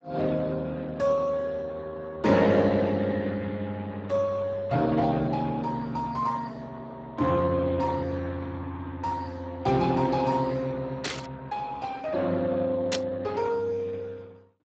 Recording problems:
codec artefacts; Speex, log-spectral distance 4 dB, nothing above 7.3 kHz
static burst; at 11 s and at 13 s; peak +2 dB vs average level

